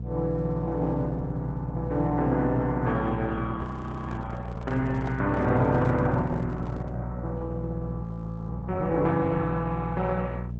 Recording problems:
lossy compression; Opus, log-spectral distance 2 dB
electrical hum; 60 Hz, harmonics up to 420 Hz, SNR 7 dB
handling noise; from 3.5 to 7 s; peak -9 dB vs average level
frozen audio; at 3.5 s and at 8 s

